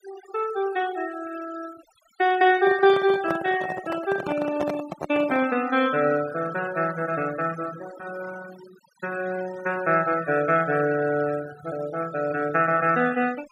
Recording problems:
denoising artefacts; signal-to-artefact ratio 17 dB
handling noise; from 2.5 to 5.5 s; peak -2 dB vs average level

